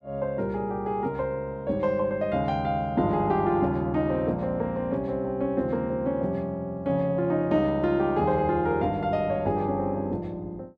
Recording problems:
none

